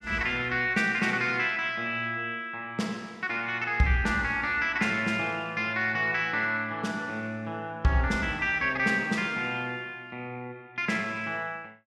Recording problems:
none

